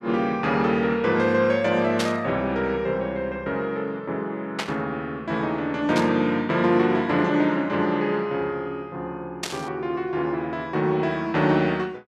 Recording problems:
static burst; 4 times, first at 2 s; peak +1 dB vs average level

